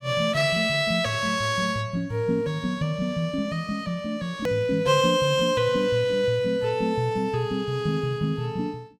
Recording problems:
edit click; at 4.5 s

